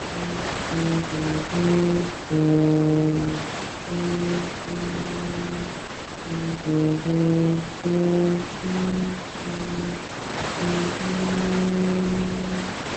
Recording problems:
codec artefacts; Opus, log-spectral distance 9 dB
hiss; slope -4 dB per octave, SNR 6 dB

